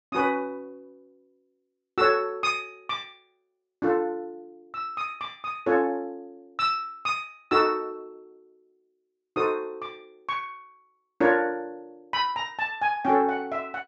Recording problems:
treble missing; nothing above 8 kHz

